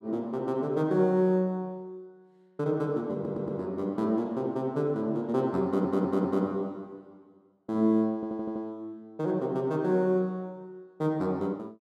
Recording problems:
stutter; at 3 s, at 5.5 s and at 8 s

